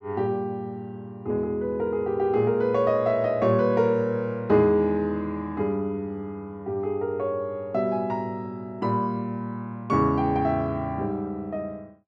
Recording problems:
none

